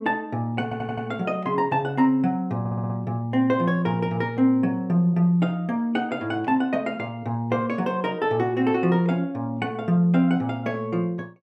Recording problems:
stutter; at 0.5 s and at 2.5 s

